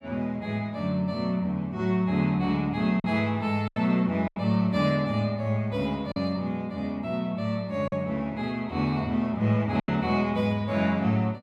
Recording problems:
lost packets; 3% of the sound replaced, filled with silence

